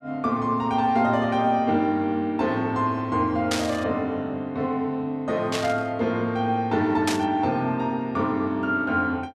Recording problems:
burst of static; at 3.5 s, at 5.5 s and at 7 s; peak +1 dB vs average level

